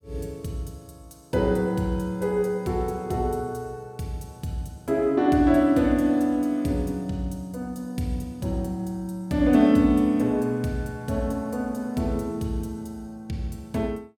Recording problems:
none

